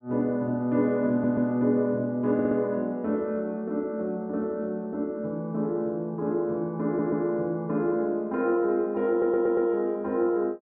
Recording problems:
stutter; 4 times, first at 1 s

